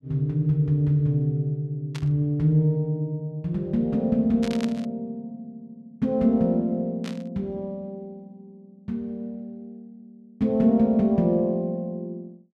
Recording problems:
burst of static; at 2 s, at 4.5 s and at 7 s; peak -8 dB vs average level

